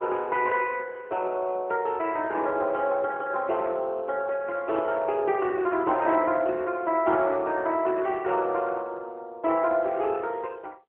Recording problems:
telephone audio; 280 Hz to 3.1 kHz, AMR-NB

